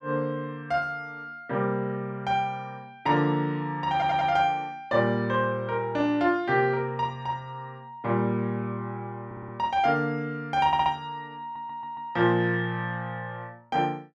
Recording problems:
stutter; 4 times, first at 4 s

